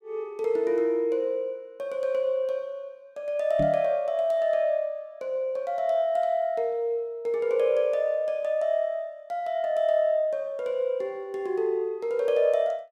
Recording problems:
knock on the microphone; at 3.5 s; peak -1 dB vs average level

